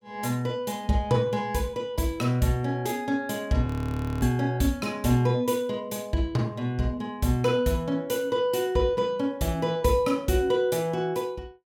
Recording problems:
audio freezing; at 3.5 s for 0.5 s

